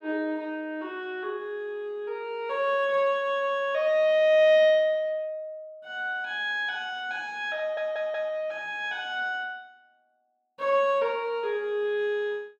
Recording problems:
stutter; at 7.5 s

